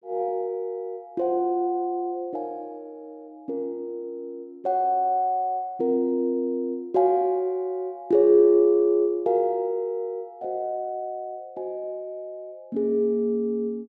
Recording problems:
none

